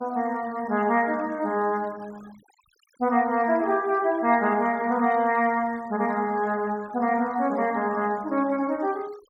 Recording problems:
denoising artefacts; signal-to-artefact ratio 25 dB

